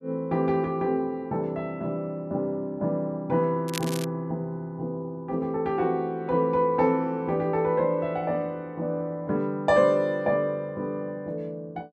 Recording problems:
crackling; at 3.5 s; loose cable, SNR 10 dB

